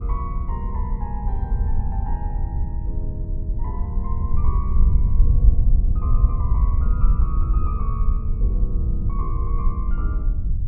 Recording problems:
wind noise; below 66 Hz, SNR -12 dB

